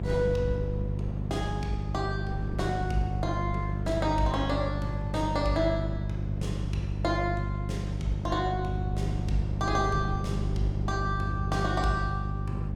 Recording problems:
hum; 50 Hz, harmonics up to 550 Hz, SNR 1 dB
wind on the microphone; below 240 Hz, SNR 11 dB

